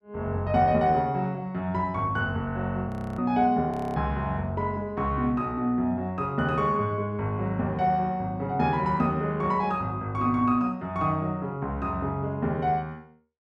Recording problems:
audio freezing; at 3 s and at 3.5 s

